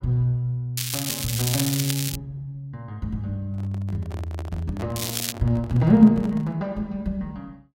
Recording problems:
crackle; from 1 to 2 s and at 5 s; loose cable, SNR 3 dB
handling noise; from 3.5 to 6.5 s; peak -8 dB vs average level

